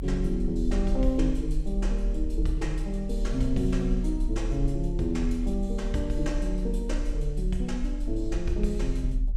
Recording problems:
low-frequency rumble; below 40 Hz, strongest tone 38 Hz, SNR 2 dB

